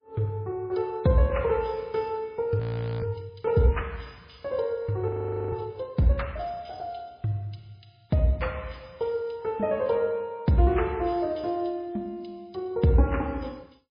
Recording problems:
lossy compression; MP3, log-spectral distance 4 dB, nothing above 11 kHz
frozen audio; at 2.5 s and at 5 s

